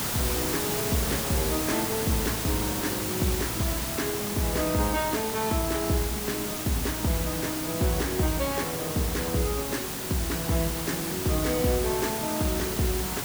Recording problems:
background hiss; slope -2 dB per octave, SNR 1 dB

